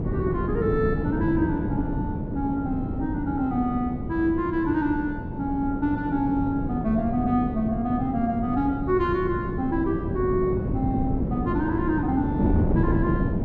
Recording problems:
wind on the microphone; below 280 Hz, SNR 2 dB

